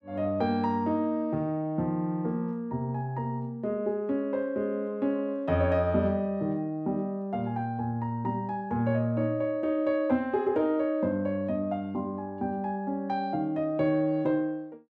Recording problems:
none

